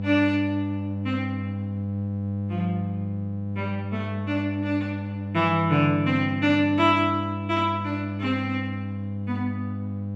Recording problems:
hum; 50 Hz, harmonics up to 600 Hz, SNR 5 dB

